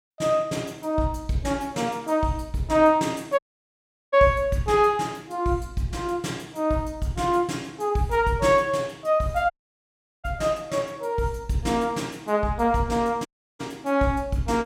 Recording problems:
dropout; at 3.5 s for 0.5 s, at 9.5 s for 0.5 s and at 13 s

